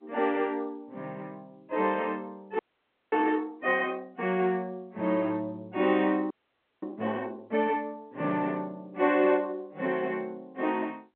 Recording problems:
telephone audio; 240 Hz to 3.4 kHz, G.711
frozen audio; at 2.5 s for 0.5 s and at 6.5 s for 0.5 s

